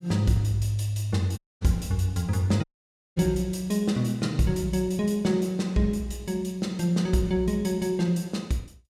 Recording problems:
dropout; at 1.5 s and at 2.5 s for 0.5 s

